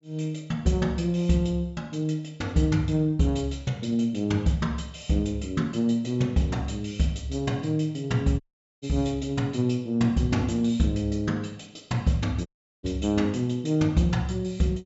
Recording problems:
low-pass filter; nothing above 8 kHz
dropout; at 8.5 s and at 12 s

